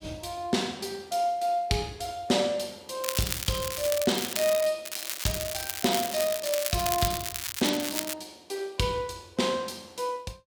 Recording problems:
crackle; from 3 to 4.5 s and from 5 to 8 s; loose cable, SNR 3 dB

